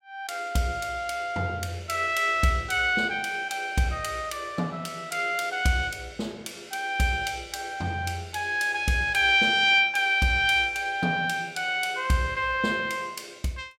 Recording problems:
none

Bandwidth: 16 kHz